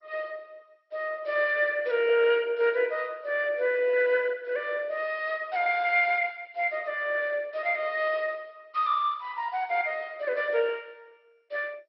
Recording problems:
lossy codec; MP2, log-spectral distance 3 dB, nothing above 5 kHz

